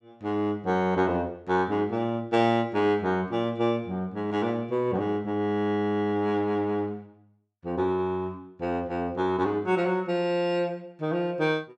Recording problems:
none

